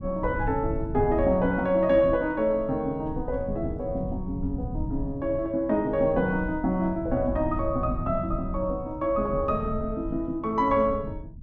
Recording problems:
rumble; below 130 Hz, SNR 10 dB

